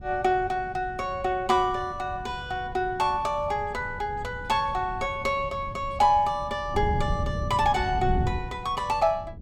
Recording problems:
wind on the microphone; below 150 Hz, SNR 10 dB

